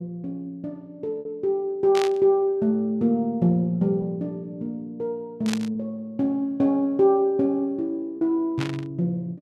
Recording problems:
lost packets; 1.5% of the sound replaced, filled with repeated pitch periods
burst of static; at 2 s, at 5.5 s and at 8.5 s; peak -2 dB vs average level

